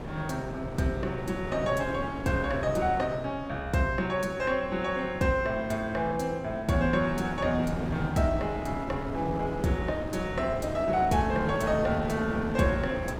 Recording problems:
wind on the microphone; below 550 Hz, SNR 9 dB

